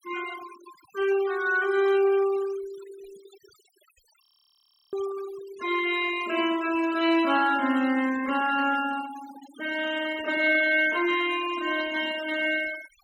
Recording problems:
noise reduction artefacts; signal-to-artefact ratio 16 dB
frozen audio; at 4 s for 0.5 s

